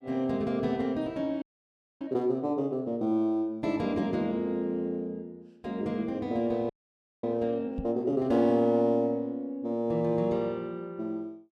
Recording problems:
audio freezing; at 1.5 s for 0.5 s and at 6.5 s for 0.5 s
microphone bump; at 8 s; peak -3 dB vs average level

